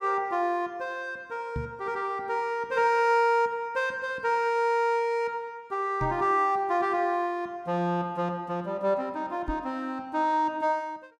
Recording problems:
microphone thump; at 1.5 s, at 6 s and at 9.5 s; peak -2 dB vs average level

